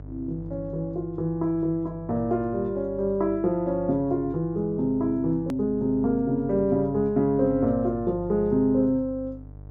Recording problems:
treble cut off; nothing above 7.2 kHz
electrical hum; 50 Hz, harmonics up to 600 Hz, SNR 17 dB
hard cut with a click; at 5.5 s

